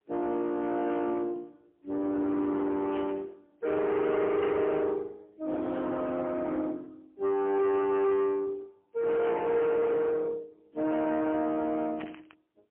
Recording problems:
telephone audio; 260 Hz to 3.4 kHz, AMR-NB, then MP3
distortion; soft clipping, signal-to-distortion ratio 11 dB
static burst; at 3 s, at 4.5 s and at 12 s; peak -9 dB vs average level

